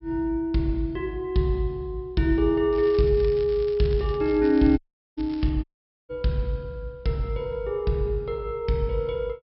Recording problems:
treble cut off; nothing above 5.5 kHz
crackling; from 2.5 to 5.5 s; loose cable, SNR 23 dB
dropout; at 5 s and at 5.5 s

